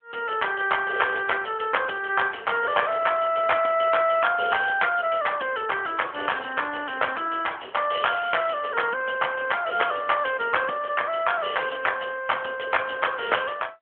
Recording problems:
telephone audio; 280 Hz to 3.4 kHz, AMR-NB

